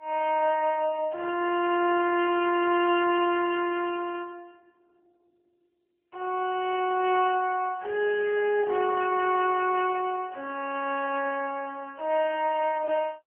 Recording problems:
telephone audio; 300 Hz to 3.1 kHz, AMR-NB

